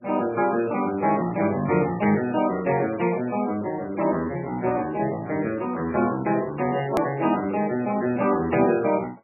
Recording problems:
lossy codec; MP3, log-spectral distance 3 dB, nothing above 13.3 kHz
edit click; at 7 s

